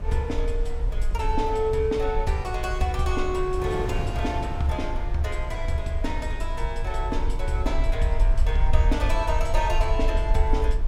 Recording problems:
low-frequency rumble; below 48 Hz, SNR 1 dB
wind on the microphone; below 240 Hz, SNR 8 dB

